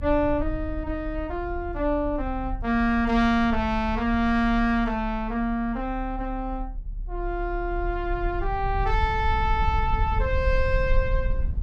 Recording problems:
rumble; below 60 Hz, strongest tone 36 Hz, SNR 7 dB

